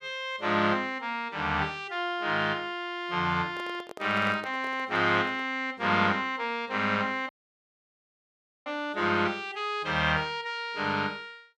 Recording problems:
handling noise; from 3.5 to 5.5 s; peak -9 dB vs average level
dropout; at 7.5 s for 1.5 s

